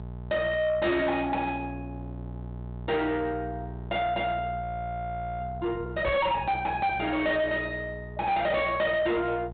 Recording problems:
low-pass filter; nothing above 4 kHz
distortion; soft clipping, signal-to-distortion ratio 8 dB
hum; 60 Hz, harmonics up to 1 kHz, SNR 12 dB
audio freezing; at 4.5 s for 1 s
knock on the microphone; at 6 s; peak +1 dB vs average level

